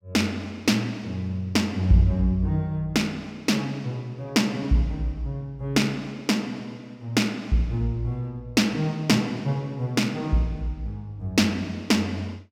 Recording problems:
none

